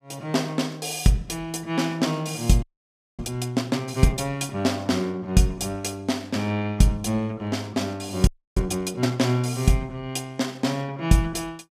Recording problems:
audio freezing; at 2.5 s for 0.5 s and at 8.5 s

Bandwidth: 15 kHz